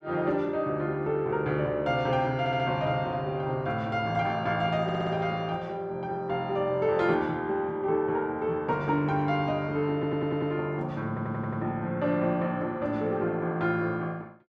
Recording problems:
audio stuttering; 4 times, first at 2.5 s

